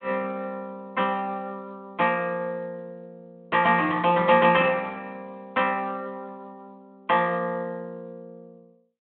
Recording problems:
telephone audio; 190 Hz to 3.5 kHz, Speex

